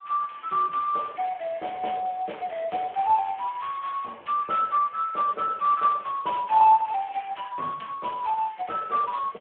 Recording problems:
phone line; 320 Hz to 2.9 kHz, Speex

